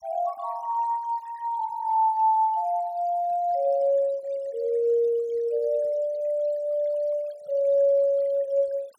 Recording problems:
noise reduction artefacts; signal-to-artefact ratio 28 dB

